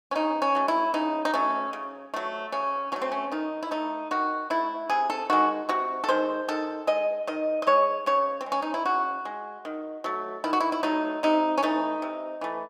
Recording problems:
none

